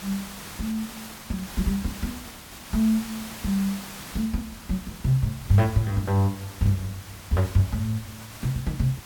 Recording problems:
hiss; slope -2 dB per octave, SNR 13 dB

